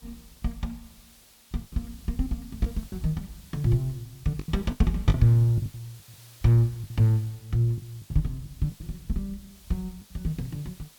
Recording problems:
hiss; slope 0 dB per octave, SNR 24 dB
lost packets; 9% of the sound replaced, filled with the last packet

